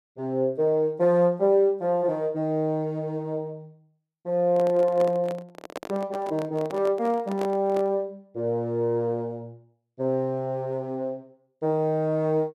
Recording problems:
microphone handling noise; from 4.5 to 8 s; peak -5 dB vs average level

